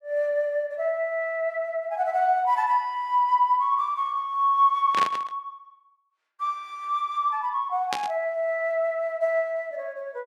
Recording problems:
burst of static; at 5 s and at 8 s; peak 0 dB vs average level

